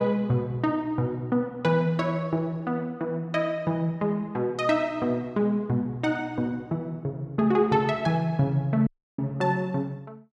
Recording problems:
dropout; at 9 s

